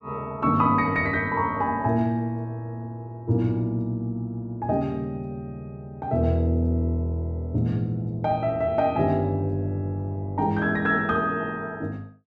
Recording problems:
none

